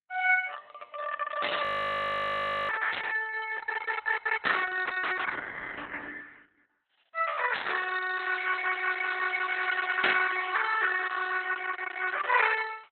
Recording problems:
codec artefacts; Opus, log-spectral distance 6 dB, nothing above 4 kHz
static burst; 5 times, first at 1.5 s; peak +2 dB vs average level
frozen audio; at 1.5 s for 1 s

